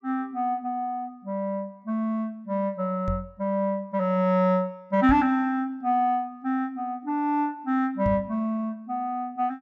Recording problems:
microphone bump; at 3 s, at 5 s and at 8 s; peak 0 dB vs average level

